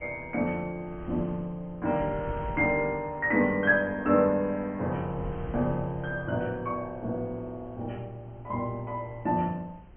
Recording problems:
treble cut off; nothing above 3.2 kHz
wind noise; below 190 Hz, SNR 17 dB

